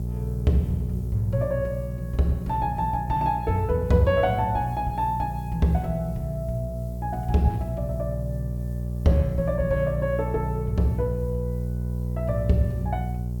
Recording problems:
hum; 60 Hz, harmonics up to 420 Hz, SNR 5 dB
background hiss; slope +5 dB per octave, SNR 29 dB

